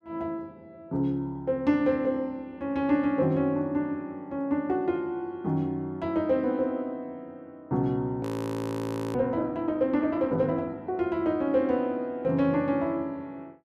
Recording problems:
frozen audio; at 8 s for 1 s

